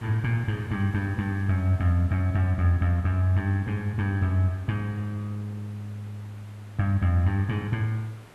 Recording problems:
hiss; slope -5 dB per octave, SNR 24 dB

